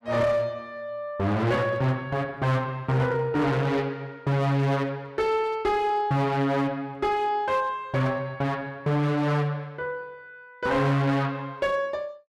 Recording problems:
distortion; hard clipping, uneven, signal-to-distortion ratio 11 dB

